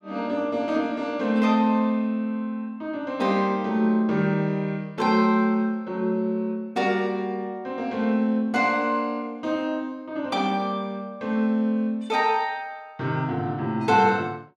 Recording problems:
none

